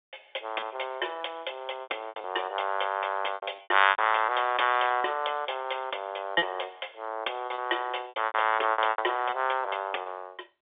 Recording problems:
phone line; 320 Hz to 3.7 kHz, G.711
packet loss; 12% of the sound replaced, filled with repeated pitch periods

